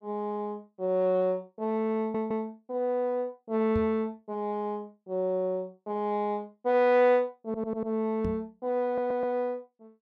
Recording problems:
stutter; at 2 s, at 7.5 s and at 9 s
microphone thump; at 4 s and at 8.5 s; peak 0 dB vs average level

